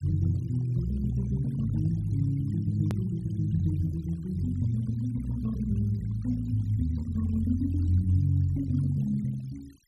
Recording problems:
denoising artefacts; signal-to-artefact ratio 27 dB
hard cut with a click; at 3 s

